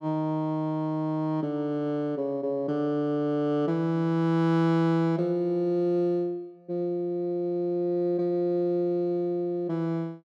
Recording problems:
none

